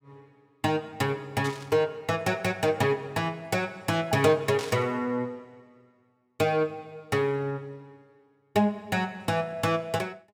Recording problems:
burst of static; at 1.5 s and at 4.5 s; peak -6 dB vs average level

